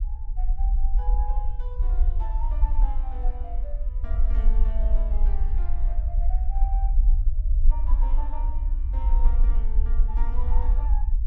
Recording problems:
rumble; below 44 Hz, strongest tone 22 Hz, SNR -16 dB

